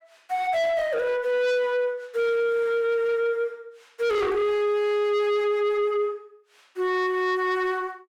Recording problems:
distorted audio; soft clipping, signal-to-distortion ratio 8 dB

